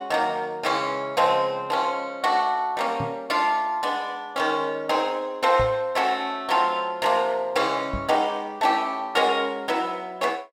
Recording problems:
microphone bump; at 3 s, at 5.5 s and at 8 s; peak -4 dB vs average level

